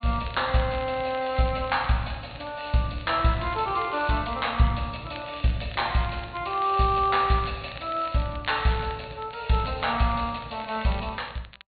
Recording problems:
low-pass filter; nothing above 4.4 kHz
crackle; vinyl, SNR 20 dB

